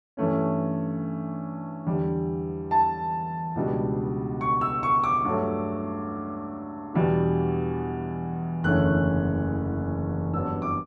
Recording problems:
none

